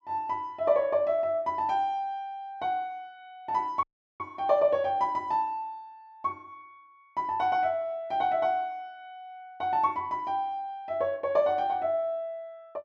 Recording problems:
audio cutting out; at 4 s

